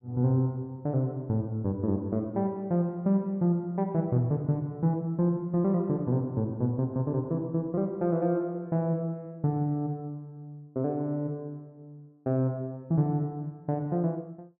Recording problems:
none

